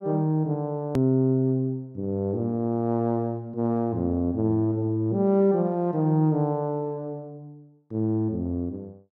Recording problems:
hard cut with a click; at 1 s

